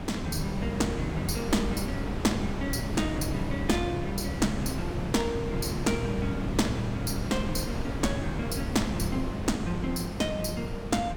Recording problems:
wind on the microphone; below 360 Hz, SNR 3 dB

